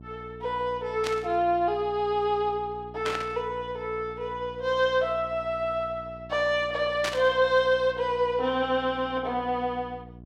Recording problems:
electrical hum; 60 Hz, harmonics up to 720 Hz, SNR 19 dB
static burst; at 1 s, at 3 s and at 7 s; peak 0 dB vs average level

